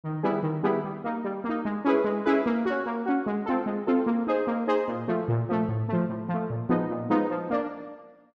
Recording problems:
none

